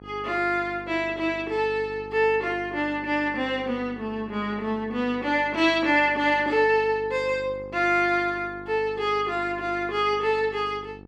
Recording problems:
hum; 50 Hz, harmonics up to 1.3 kHz, SNR 19 dB

